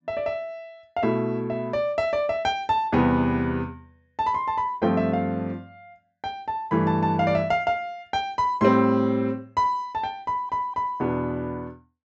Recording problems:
low-pass filter; nothing above 8 kHz
audio stuttering; at 10 s

